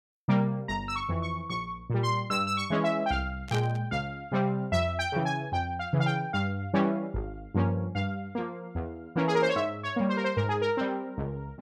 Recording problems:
burst of static; at 3.5 s; peak -6 dB vs average level

